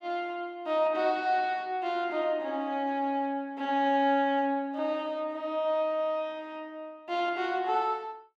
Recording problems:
none

